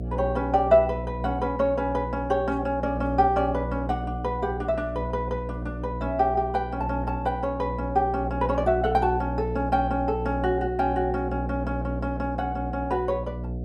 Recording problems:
electrical hum; 60 Hz, harmonics up to 720 Hz, SNR 7 dB

